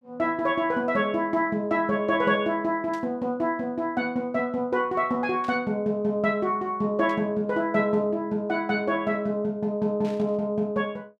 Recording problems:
burst of static; 4 times, first at 3 s; peak -15 dB vs average level

